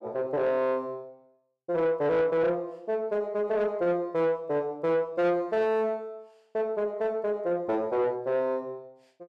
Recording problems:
distortion; soft clipping, signal-to-distortion ratio 12 dB

